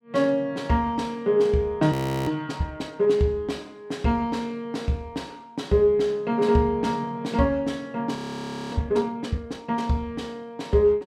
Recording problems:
audio freezing; at 2 s and at 8 s for 0.5 s

